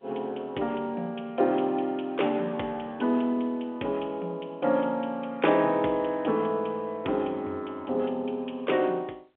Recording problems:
telephone audio; 280 Hz to 3.5 kHz, G.711

